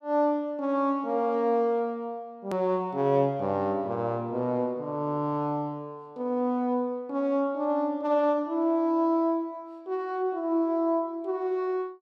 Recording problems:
edit click; at 2.5 s

